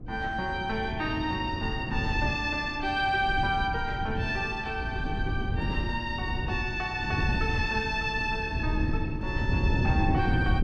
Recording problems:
wind noise; below 170 Hz, SNR 3 dB

